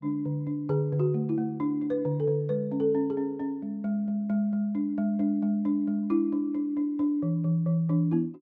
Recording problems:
none

